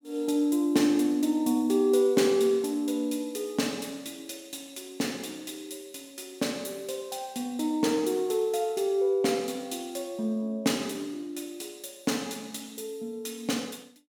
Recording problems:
none

